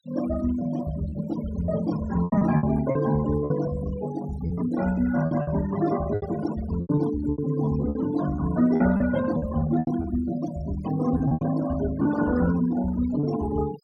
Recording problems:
noise reduction artefacts; signal-to-artefact ratio 14 dB
packet loss; 9% of the sound replaced, filled with repeated pitch periods

